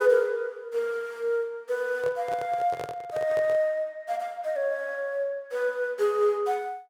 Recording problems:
handling noise; from 2 to 3.5 s; peak -5 dB vs average level

